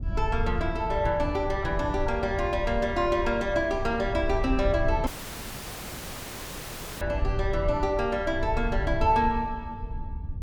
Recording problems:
low-frequency rumble; below 82 Hz, SNR 7 dB
dropout; at 5 s for 2 s

